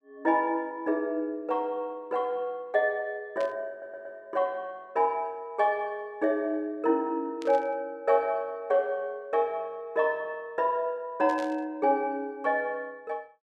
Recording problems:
burst of static; at 3.5 s, at 7.5 s and at 11 s; peak -11 dB vs average level
stutter; at 3.5 s

